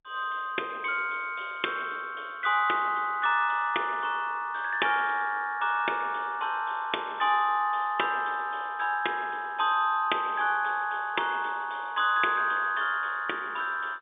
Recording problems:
phone line; 300 Hz to 3.6 kHz, G.711

